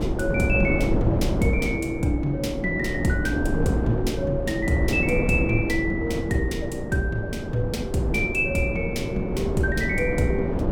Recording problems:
wind noise; below 360 Hz, SNR 2 dB

